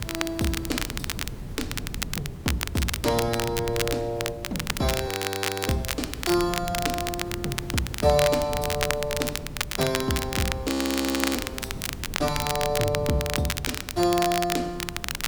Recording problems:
hiss; slope -5 dB per octave, SNR 19 dB
wind on the microphone; below 180 Hz, SNR 12 dB
crackling; vinyl, SNR 3 dB
frozen audio; at 5 s for 0.5 s and at 11 s for 0.5 s

